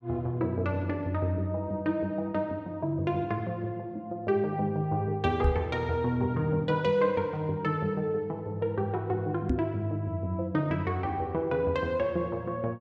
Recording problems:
microphone bump; at 5.5 s and at 9.5 s; peak +7 dB vs average level

